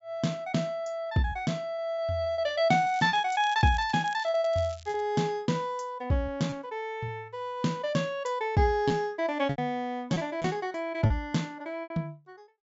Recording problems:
treble cut off; nothing above 8 kHz
packet loss; 6% of the sound replaced, filled with repeated pitch periods
crackle; from 3 to 5 s; loose cable, SNR 21 dB

